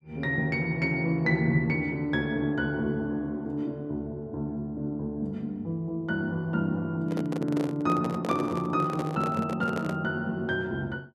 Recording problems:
microphone handling noise; from 7 to 10 s; peak -1 dB vs average level

